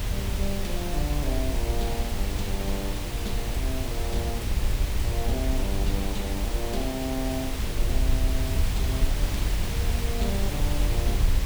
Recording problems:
hum; 60 Hz, harmonics up to 540 Hz, SNR 24 dB
hiss; slope -3 dB per octave, SNR 1 dB
low-frequency rumble; below 70 Hz, SNR 0 dB
wind on the microphone; below 72 Hz, SNR -1 dB

